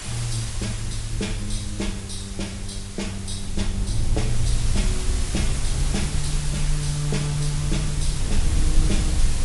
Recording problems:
lossy compression; MP3, log-spectral distance 7 dB, nothing above 11 kHz
hiss; slope 0 dB per octave, SNR 4 dB
low-frequency rumble; below 66 Hz, strongest tone 20 Hz, SNR 0 dB

